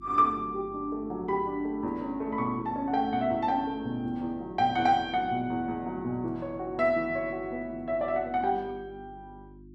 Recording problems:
hum; 50 Hz, harmonics up to 350 Hz, SNR 21 dB

